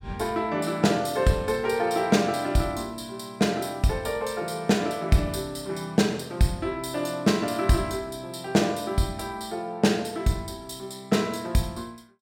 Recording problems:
none

